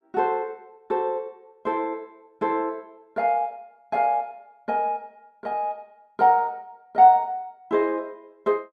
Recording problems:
none

